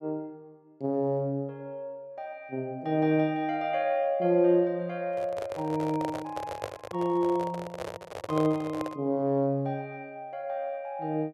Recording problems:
microphone handling noise; from 5 to 9 s; peak -1 dB vs average level

